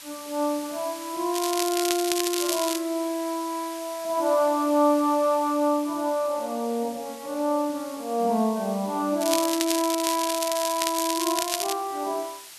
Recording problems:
hiss; slope +3 dB per octave, SNR 15 dB
crackle; from 1.5 to 3 s and from 9 to 12 s; loose cable, SNR 3 dB

